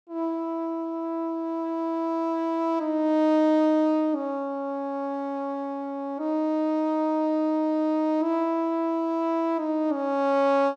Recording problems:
none

